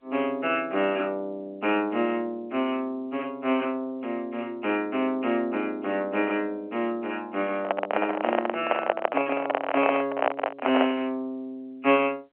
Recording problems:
telephone audio; 240 Hz to 3.2 kHz, G.711
microphone handling noise; from 7.5 to 11 s; peak +9 dB vs average level

